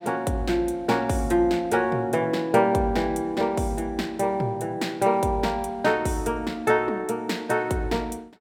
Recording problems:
none

